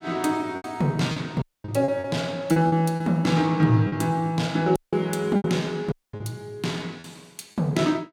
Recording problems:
packet loss; 9% of the sound replaced, filled with repeated pitch periods
dropout; at 1.5 s, at 5 s and at 6 s

